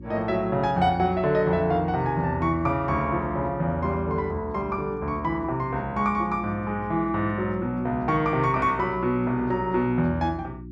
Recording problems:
hum; 60 Hz, harmonics up to 360 Hz, SNR 16 dB

